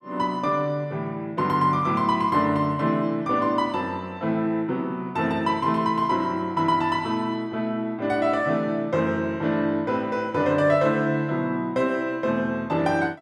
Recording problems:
none

